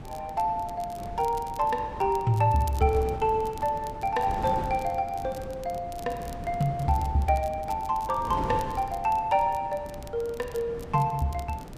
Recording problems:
wind noise; below 420 Hz, SNR 13 dB
crackling; vinyl, SNR 23 dB

